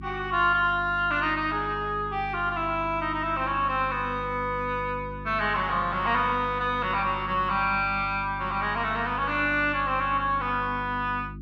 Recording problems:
electrical hum; 50 Hz, harmonics up to 350 Hz, SNR 14 dB

